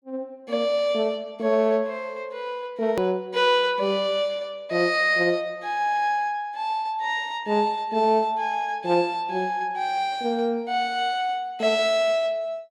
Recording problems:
click at an edit; at 3 s

